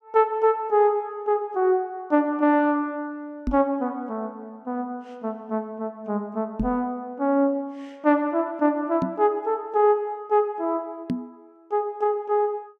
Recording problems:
microphone bump; 4 times, first at 3.5 s; peak +2 dB vs average level

